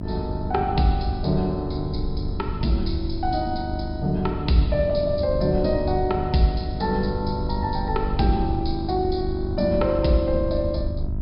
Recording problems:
low-pass filter; nothing above 5.5 kHz
hum; 50 Hz, harmonics up to 1 kHz, SNR 9 dB
low-frequency rumble; below 76 Hz, SNR 7 dB

